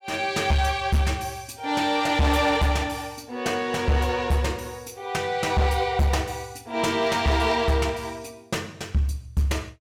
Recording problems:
distorted audio; hard clipping, uneven, signal-to-distortion ratio 11 dB

